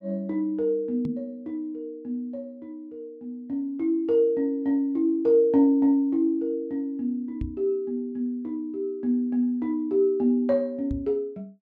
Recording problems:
microphone thump; at 1 s, at 7.5 s and at 11 s; peak -3 dB vs average level

